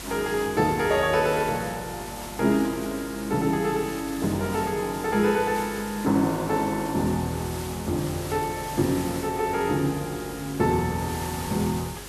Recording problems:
mains hum; 50 Hz, harmonics up to 400 Hz, SNR 20 dB
hiss; slope -1 dB per octave, SNR 13 dB

